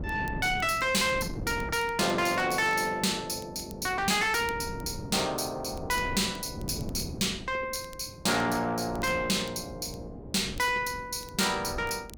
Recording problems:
distorted audio; soft clipping, signal-to-distortion ratio 7 dB
wind noise; below 320 Hz, SNR 13 dB
crackle; vinyl, SNR 25 dB

